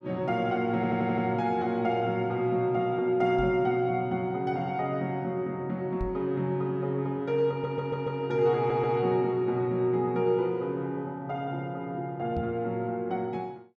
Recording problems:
stutter; at 1 s, at 7.5 s and at 8.5 s
knock on the microphone; at 3.5 s, at 6 s and at 12 s; peak -2 dB vs average level

